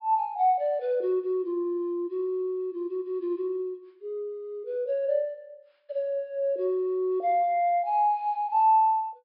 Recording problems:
treble cut off; nothing above 5.5 kHz

